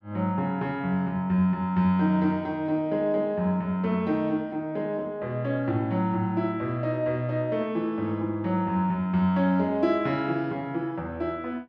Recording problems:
none

